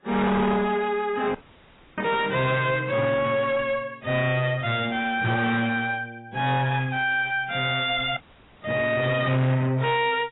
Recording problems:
lossy compression; AAC, log-spectral distance 5 dB, nothing above 3.6 kHz
distortion; soft clipping, signal-to-distortion ratio 7 dB
audio cutting out; at 1.5 s for 0.5 s and at 8 s

